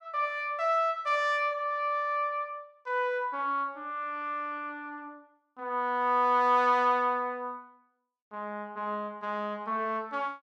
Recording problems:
none

